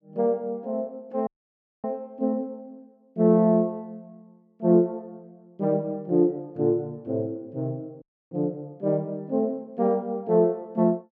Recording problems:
dropout; at 1.5 s for 0.5 s and at 8 s

